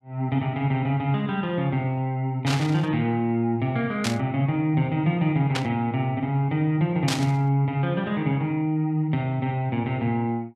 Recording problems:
burst of static; 4 times, first at 2.5 s; peak +1 dB vs average level

